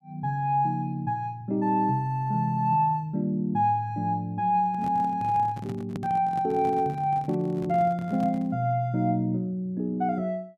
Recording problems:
handling noise; from 4.5 to 8.5 s; peak -5 dB vs average level

